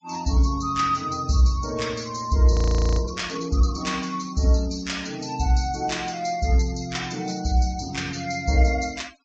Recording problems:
low-pass filter; nothing above 8 kHz
noise reduction artefacts; signal-to-artefact ratio 21 dB
frozen audio; at 2.5 s

